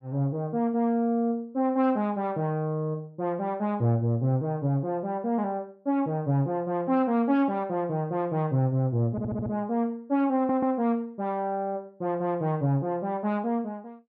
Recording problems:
stutter; at 9 s and at 10 s

